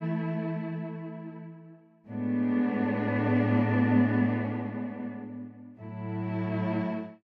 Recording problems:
none

